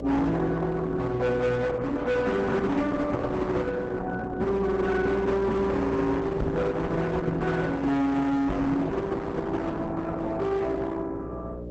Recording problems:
lossy compression; Opus, log-spectral distance 2 dB, nothing above 8 kHz
distortion; hard clipping, signal-to-distortion ratio 7 dB
electrical hum; 60 Hz, harmonics up to 600 Hz, SNR 13 dB
microphone bump; at 6.5 s and at 8.5 s; peak +5 dB vs average level

